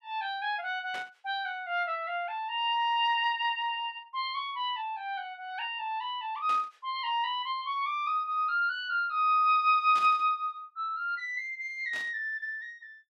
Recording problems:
static burst; 4 times, first at 1 s; peak -8 dB vs average level

